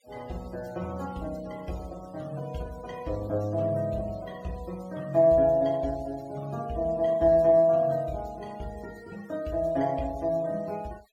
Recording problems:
noise reduction artefacts; signal-to-artefact ratio 26 dB

